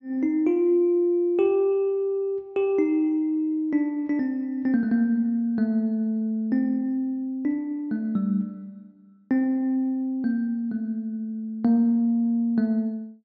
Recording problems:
treble missing; nothing above 8 kHz

